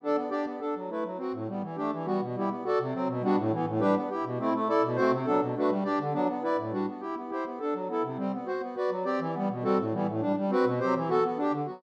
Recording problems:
none

